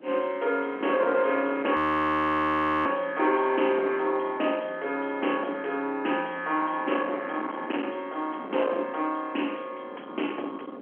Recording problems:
telephone audio; 240 Hz to 3.2 kHz, G.711
distortion; soft clipping, signal-to-distortion ratio 12 dB
wind on the microphone; below 1.2 kHz, SNR 13 dB
frozen audio; at 2 s for 1 s

